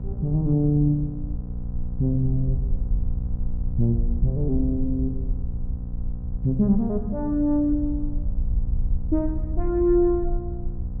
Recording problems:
electrical hum; 60 Hz, harmonics up to 780 Hz, SNR 12 dB
rumble; below 60 Hz, SNR 7 dB

